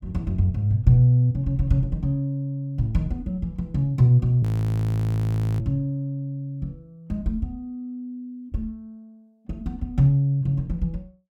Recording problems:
frozen audio; at 4.5 s for 1 s

